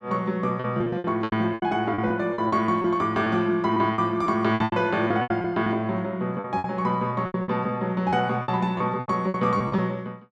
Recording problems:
lost packets; 14% of the sound replaced, filled with repeated pitch periods

